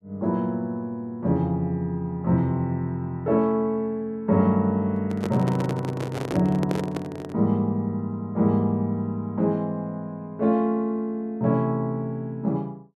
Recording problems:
handling noise; from 5 to 7.5 s; peak -1 dB vs average level

